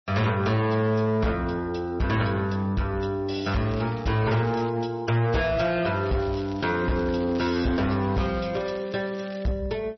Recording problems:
lossy compression; MP3, log-spectral distance 3 dB, nothing above 5.7 kHz
distortion; hard clipping, signal-to-distortion ratio 10 dB
crackle; from 3.5 to 4.5 s and from 6 to 9.5 s; loose cable, SNR 23 dB

